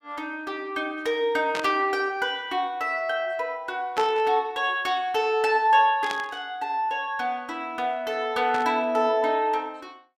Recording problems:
burst of static; 4 times, first at 1.5 s; peak -3 dB vs average level

